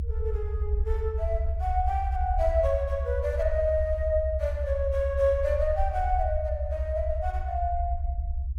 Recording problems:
low-frequency rumble; below 72 Hz, SNR 2 dB

